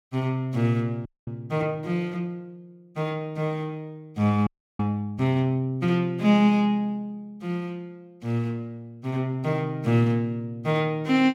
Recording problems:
audio freezing; at 1 s and at 4.5 s

